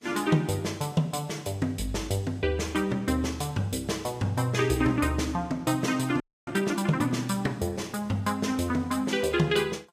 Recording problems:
codec artefacts; Vorbis, log-spectral distance 3 dB, nothing above 15.1 kHz
frozen audio; at 6 s

